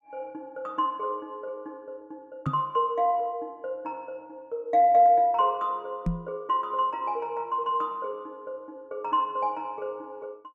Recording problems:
microphone thump; at 2.5 s and at 6 s; peak +2 dB vs average level

